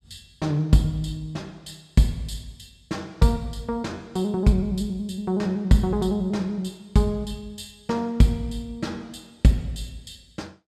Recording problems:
none

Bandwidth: 14 kHz